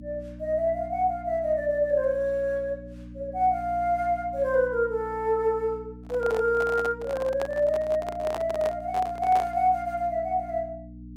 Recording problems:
hum; 60 Hz, harmonics up to 300 Hz, SNR 17 dB
handling noise; from 6 to 9.5 s; peak -3 dB vs average level

